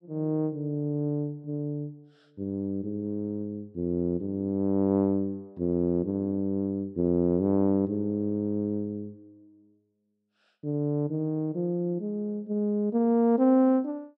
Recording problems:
none

